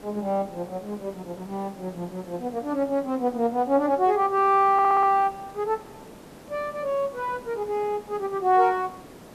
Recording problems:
hiss; slope -7 dB per octave, SNR 20 dB
stutter; at 4.5 s

